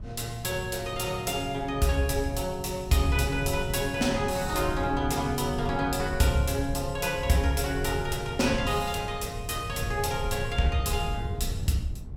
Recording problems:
wind on the microphone; below 110 Hz, SNR 9 dB

